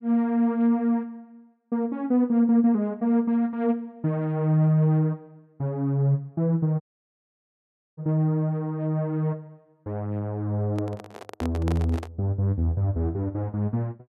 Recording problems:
audio cutting out; at 7 s for 1 s
microphone handling noise; from 11 to 12 s; peak -6 dB vs average level

